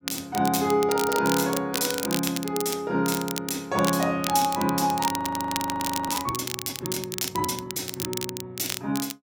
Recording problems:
crackle; vinyl, SNR 6 dB
frozen audio; at 5 s for 1 s

